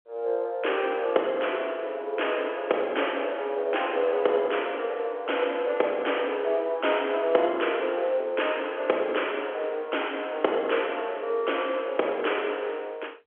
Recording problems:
telephone audio; 340 Hz to 3.3 kHz, G.711

